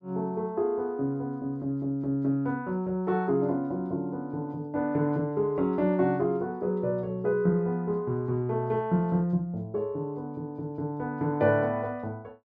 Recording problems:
none

